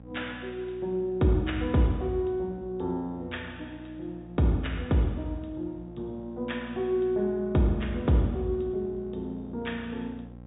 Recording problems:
treble missing; nothing above 4 kHz
hum; 60 Hz, harmonics up to 1.1 kHz, SNR 17 dB

